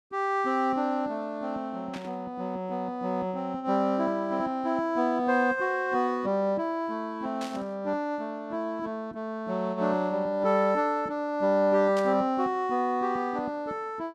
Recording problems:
burst of static; at 2 s, at 7.5 s and at 12 s; peak -8 dB vs average level

